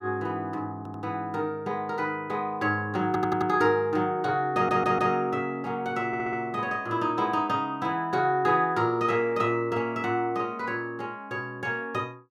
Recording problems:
stutter; 4 times, first at 1 s

